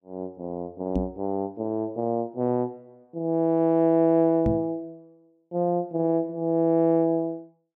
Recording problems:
knock on the microphone; at 1 s and at 4.5 s; peak +2 dB vs average level

